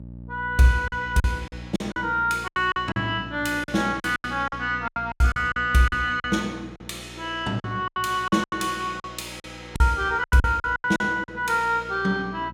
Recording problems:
electrical hum; 60 Hz, harmonics up to 600 Hz, SNR 18 dB
packet loss; 13% of the sound replaced, filled with silence

